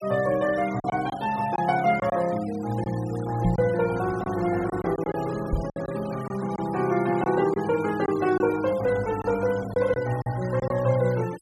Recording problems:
noise reduction artefacts; signal-to-artefact ratio 18 dB
packet loss; 6% of the sound replaced, filled with silence
microphone bump; at 3.5 s and at 5.5 s; peak +3 dB vs average level

